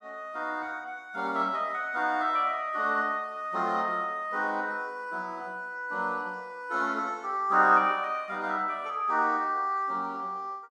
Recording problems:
none

